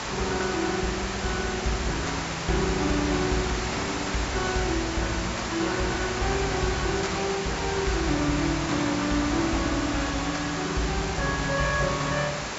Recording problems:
treble missing; nothing above 8 kHz
background hiss; slope -3 dB per octave, SNR 3 dB

